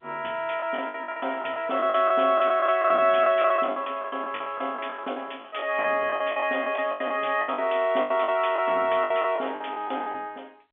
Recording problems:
phone line; 280 Hz to 3.3 kHz, G.711
lost packets; 16% of the sound replaced, filled with the last packet

